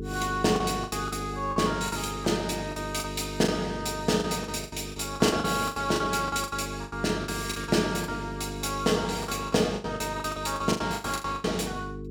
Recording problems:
hum; 50 Hz, harmonics up to 450 Hz, SNR 9 dB
packet loss; 15% of the sound replaced, filled with the last packet

